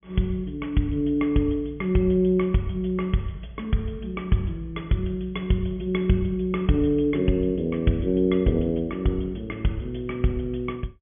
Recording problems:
treble missing; nothing above 3.4 kHz

